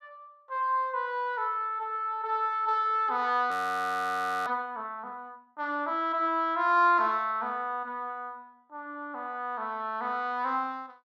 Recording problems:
frozen audio; at 3.5 s for 1 s

